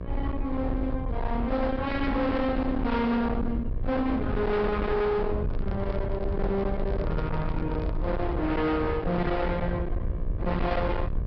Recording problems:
treble cut off; nothing above 5.5 kHz
distorted audio; hard clipping, uneven, signal-to-distortion ratio 7 dB
hum; 60 Hz, harmonics up to 1.8 kHz, SNR 16 dB
rumble; below 200 Hz, SNR 4 dB
handling noise; from 5.5 to 8.5 s; peak -5 dB vs average level

